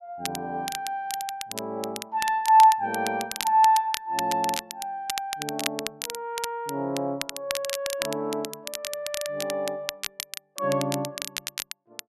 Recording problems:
crackling; vinyl, SNR 8 dB

